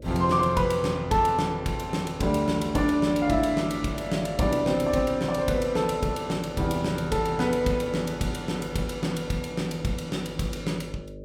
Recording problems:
electrical hum; 50 Hz, harmonics up to 600 Hz, SNR 16 dB

